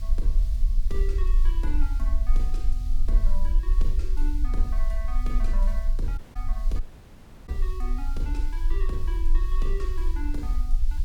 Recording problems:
background hiss; SNR 15 dB
rumble; below 38 Hz, strongest tone 24 Hz, SNR -11 dB
dropout; at 6 s and at 7 s for 0.5 s

